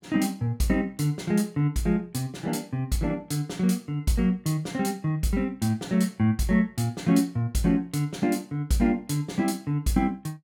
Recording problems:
none

